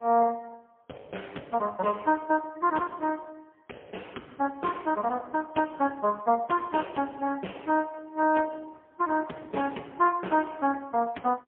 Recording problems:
telephone audio; 240 Hz to 2.6 kHz, AMR-NB, then MP3

